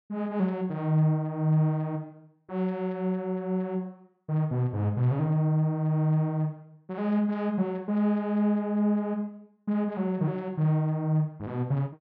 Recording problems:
none

